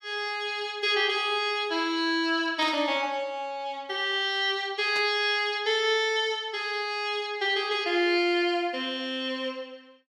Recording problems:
burst of static; at 2.5 s and at 5 s; peak -7 dB vs average level

